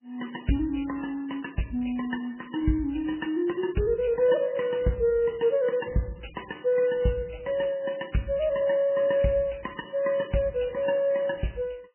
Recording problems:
lossy compression; MP3, log-spectral distance 5 dB, nothing above 3 kHz

